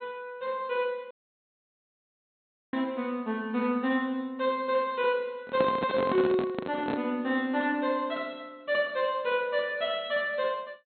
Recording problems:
treble cut off; nothing above 4.1 kHz
audio cutting out; at 1 s for 1.5 s
handling noise; from 5.5 to 7 s; peak +2 dB vs average level

